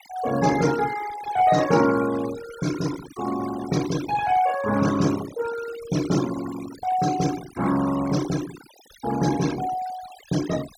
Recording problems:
noise reduction artefacts; signal-to-artefact ratio 13 dB

